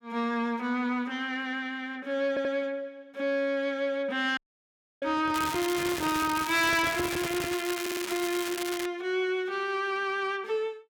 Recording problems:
distorted audio; soft clipping, signal-to-distortion ratio 11 dB
audio stuttering; at 2.5 s and at 8 s
audio cutting out; at 4.5 s for 0.5 s
handling noise; from 5 to 7.5 s; peak -2 dB vs average level
crackle; from 5.5 to 9 s; loose cable, SNR 6 dB

